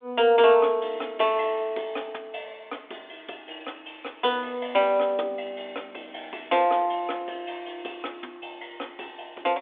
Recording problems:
telephone audio; 240 Hz to 3.6 kHz, G.726

